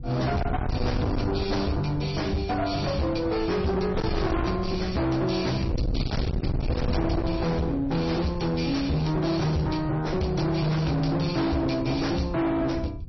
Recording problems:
lossy codec; MP3, log-spectral distance 5 dB, nothing above 5.7 kHz
distortion; hard clipping, signal-to-distortion ratio 7 dB
wind on the microphone; below 200 Hz, SNR 6 dB

